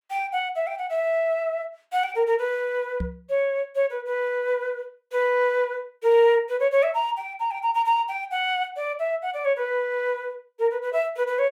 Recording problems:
microphone bump; at 3 s; peak -2 dB vs average level

